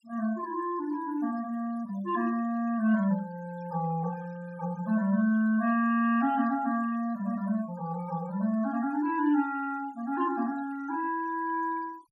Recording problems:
noise reduction artefacts; signal-to-artefact ratio 23 dB

